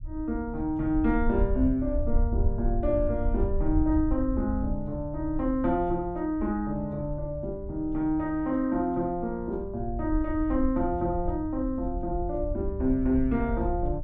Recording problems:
low-frequency rumble; below 68 Hz, SNR 6 dB

